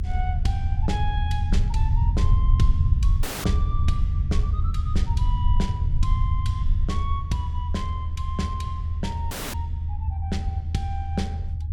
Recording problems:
low-frequency rumble; below 82 Hz, SNR -7 dB
dropout; at 3 s and at 9.5 s

